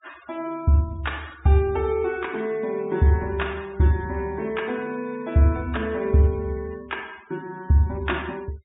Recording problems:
treble cut off; nothing above 4 kHz
denoising artefacts; signal-to-artefact ratio 25 dB

